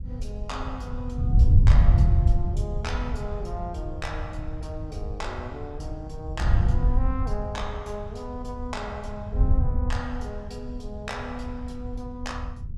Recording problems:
wind on the microphone; below 92 Hz, SNR -10 dB

